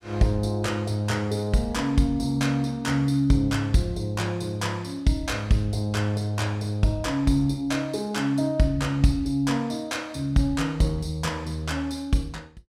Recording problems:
none

